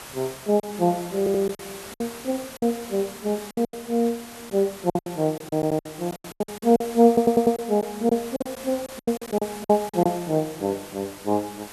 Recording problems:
hiss; slope -2 dB per octave, SNR 15 dB
packet loss; 12% of the sound replaced, filled with silence
stutter; at 1 s, at 5.5 s and at 7 s

